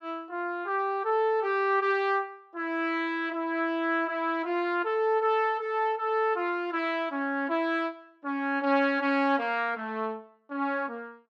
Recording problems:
none

